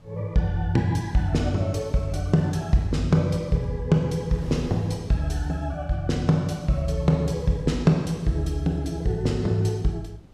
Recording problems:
wind noise; below 270 Hz, SNR 24 dB

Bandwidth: 14.5 kHz